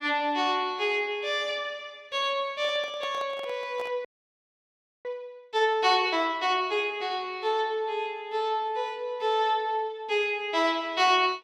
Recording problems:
handling noise; from 2.5 to 4 s; peak -10 dB vs average level
frozen audio; at 4 s for 1 s

